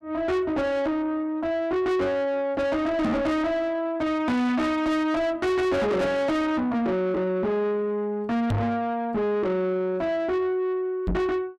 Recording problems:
distorted audio; soft clipping, signal-to-distortion ratio 7 dB
microphone thump; at 3 s, at 8.5 s and at 11 s; peak +5 dB vs average level

